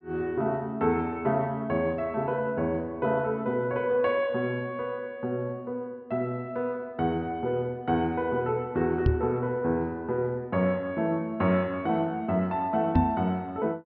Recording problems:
treble cut off; nothing above 5.5 kHz
microphone thump; at 9 s and at 13 s; peak +8 dB vs average level

